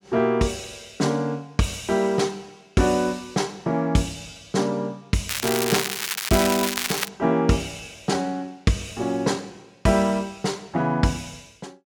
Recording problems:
crackle; from 5.5 to 7 s; loose cable, SNR 2 dB

